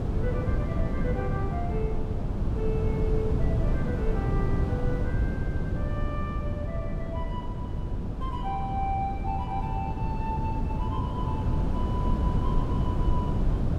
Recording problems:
wind on the microphone; below 170 Hz, SNR -7 dB

